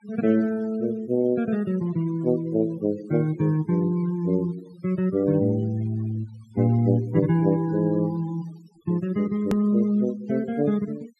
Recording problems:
denoising artefacts; signal-to-artefact ratio 24 dB
hard cut with a click; at 9.5 s

